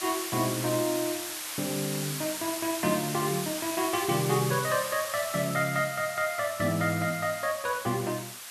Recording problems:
background hiss; SNR 5 dB

